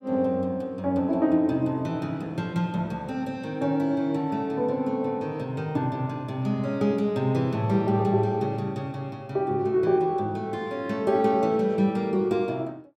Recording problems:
none

